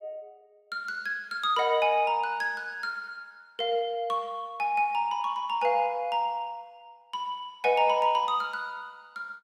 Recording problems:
none

